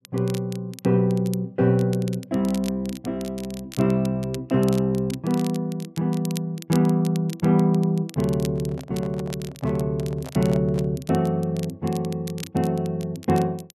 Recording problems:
crackle; vinyl, SNR 19 dB
handling noise; from 8.5 to 11 s; peak -11 dB vs average level

